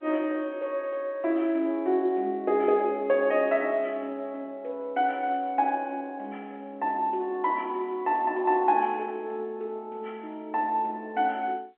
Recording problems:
phone line; 280 Hz to 3.4 kHz, G.711

